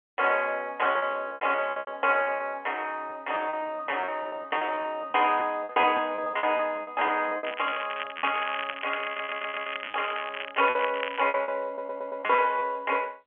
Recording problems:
telephone audio; 280 Hz to 3.2 kHz, G.711
packet loss; 15% of the sound replaced, filled with repeated pitch periods
crackle; from 7.5 to 11 s; loose cable, SNR 8 dB
audio stuttering; at 9 s and at 12 s

